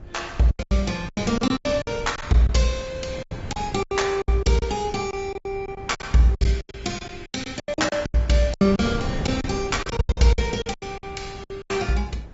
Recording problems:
treble missing; nothing above 7.6 kHz
codec artefacts; MP2, then Opus, log-spectral distance 4 dB
wind on the microphone; below 230 Hz, SNR 13 dB
packet loss; 18% of the sound replaced, filled with silence

